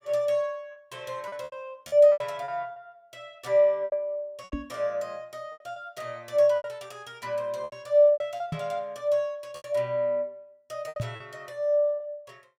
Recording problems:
lost packets; 10% of the sound replaced, filled with repeated pitch periods
microphone thump; at 4.5 s, at 8.5 s and at 11 s; peak -2 dB vs average level

